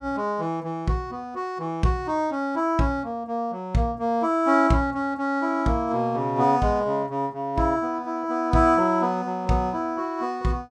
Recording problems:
none

